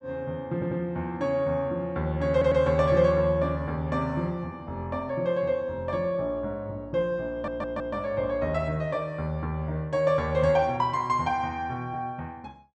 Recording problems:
audio stuttering; at 0.5 s, at 2.5 s and at 7.5 s

